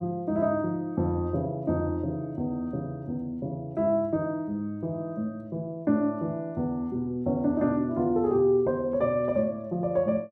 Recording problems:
none

